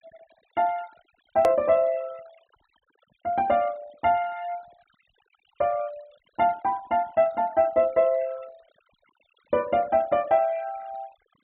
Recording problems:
low-pass filter; nothing above 4 kHz
denoising artefacts; signal-to-artefact ratio 26 dB
click at an edit; at 1.5 s

